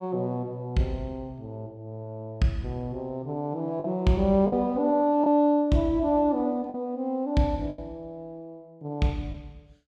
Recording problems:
lost packets; 3% of the sound replaced, filled with the last packet

